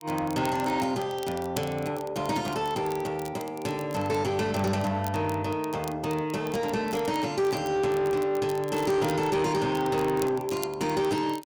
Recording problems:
distortion; soft clipping, signal-to-distortion ratio 12 dB
crackle; vinyl, SNR 18 dB

